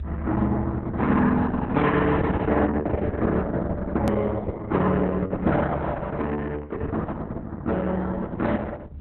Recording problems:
lossy compression; Vorbis, then Opus, log-spectral distance 3 dB, nothing above 13.1 kHz
low-frequency rumble; below 80 Hz, strongest tone 72 Hz, SNR 9 dB
click at an edit; at 4 s

